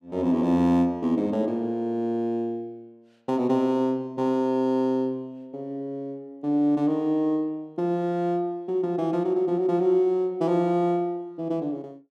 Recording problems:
none

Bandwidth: 13.5 kHz